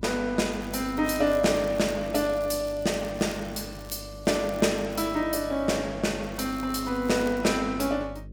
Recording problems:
hum; 50 Hz, harmonics up to 550 Hz, SNR 17 dB
crackling; from 0.5 to 4 s, at 4.5 s and from 6 to 7.5 s; loose cable, SNR 23 dB

